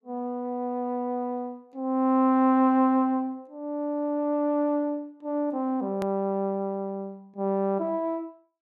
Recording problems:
hard cut with a click; at 6 s

